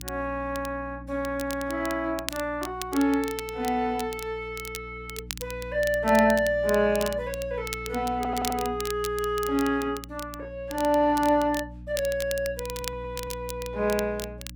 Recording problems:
hum; 60 Hz, harmonics up to 300 Hz, SNR 16 dB
crackling; vinyl, SNR 12 dB
stutter; at 8 s and at 13 s

